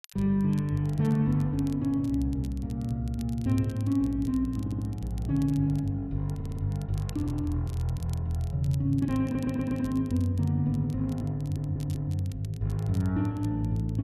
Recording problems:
crackle; vinyl, SNR 25 dB
audio stuttering; 4 times, first at 4.5 s

